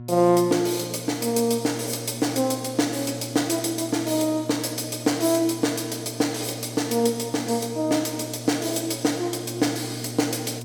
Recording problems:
mains hum; 60 Hz, harmonics up to 720 Hz, SNR 14 dB

